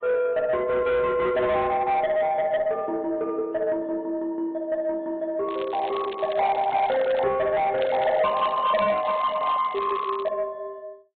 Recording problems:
low-pass filter; nothing above 4 kHz
codec artefacts; AAC, log-spectral distance 2 dB
distorted audio; soft clipping, signal-to-distortion ratio 11 dB
crackle; from 5.5 to 7 s and from 8 to 10 s; loose cable, SNR 18 dB

